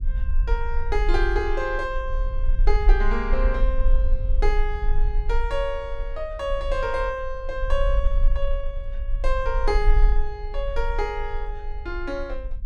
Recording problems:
rumble; below 42 Hz, strongest tone 26 Hz, SNR -2 dB

